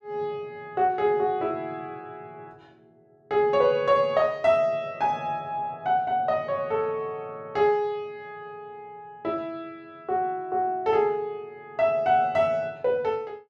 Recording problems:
none

